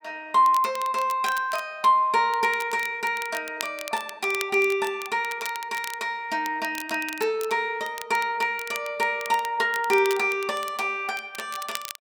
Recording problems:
crackling; vinyl, SNR 15 dB

